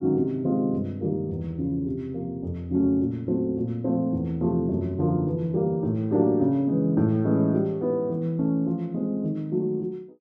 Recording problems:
none

